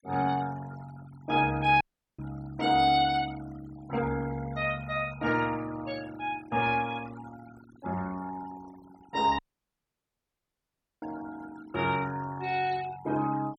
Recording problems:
denoising artefacts; signal-to-artefact ratio 18 dB
dropout; at 2 s and at 9.5 s for 1.5 s

